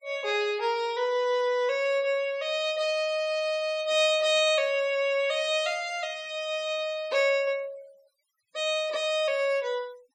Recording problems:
noise reduction artefacts; signal-to-artefact ratio 24 dB

